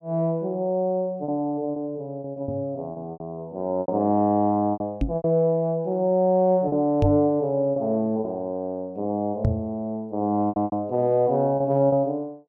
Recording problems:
packet loss; 7% of the sound replaced, filled with repeated pitch periods
knock on the microphone; 4 times, first at 2.5 s; peak +4 dB vs average level

